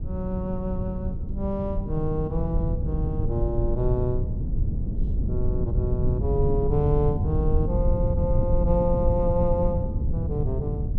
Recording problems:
rumble; below 110 Hz, SNR -1 dB

